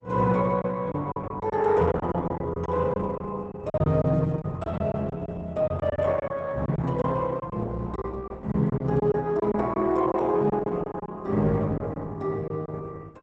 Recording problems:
codec artefacts; Opus, log-spectral distance 3 dB, nothing above 8 kHz
packet loss; 9% of the sound replaced, filled with silence

